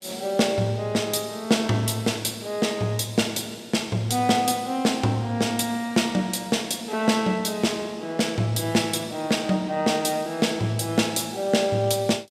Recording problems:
none

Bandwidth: 15.5 kHz